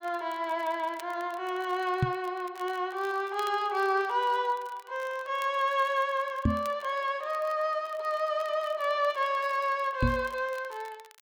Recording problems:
crackling; vinyl, SNR 24 dB
microphone bump; at 2 s, at 6.5 s and at 10 s; peak +7 dB vs average level

